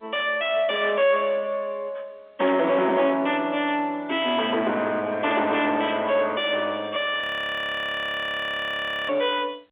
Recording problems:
phone line; 240 Hz to 3.6 kHz, G.711
distortion; soft clipping, signal-to-distortion ratio 6 dB
audio freezing; at 7 s for 2 s

